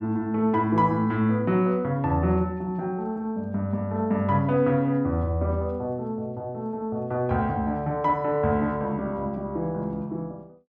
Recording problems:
none

